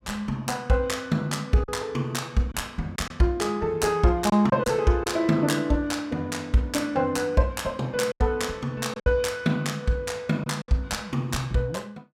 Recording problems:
lost packets; 4% of the sound replaced, filled with silence

